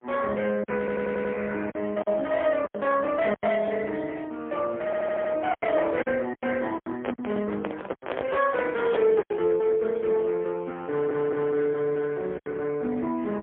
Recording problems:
telephone audio; 220 Hz to 3.3 kHz, AMR-NB, then MP3
lost packets; 7% of the sound replaced, filled with silence
audio stuttering; at 1 s, at 5 s and at 11 s
microphone handling noise; from 7 to 9.5 s; peak +2 dB vs average level

